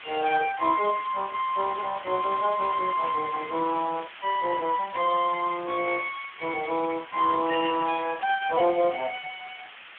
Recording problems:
telephone audio; 220 Hz to 2.8 kHz, Speex
hiss; SNR 16 dB

